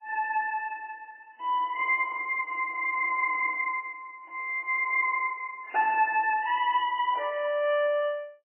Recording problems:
lossy codec; MP3, log-spectral distance 3 dB, nothing above 3 kHz

